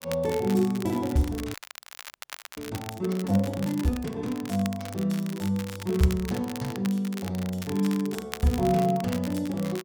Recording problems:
crackle; vinyl, SNR 14 dB
audio freezing; at 1.5 s for 1 s

